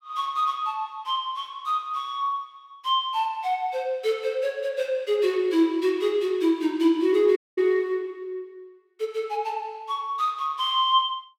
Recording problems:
dropout; at 7.5 s

